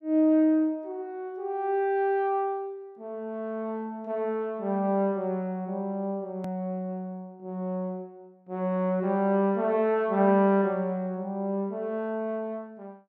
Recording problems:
hard cut with a click; at 6.5 s

